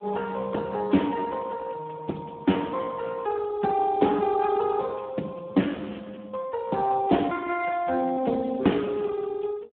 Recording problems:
telephone audio; 220 Hz to 3.2 kHz, Speex

